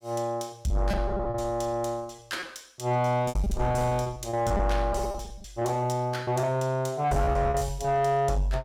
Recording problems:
distorted audio; soft clipping, signal-to-distortion ratio 11 dB
lost packets; 16% of the sound replaced, filled with repeated pitch periods

